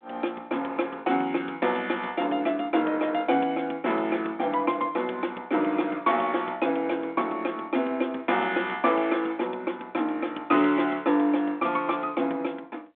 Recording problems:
phone line; 220 Hz to 3.7 kHz, G.726

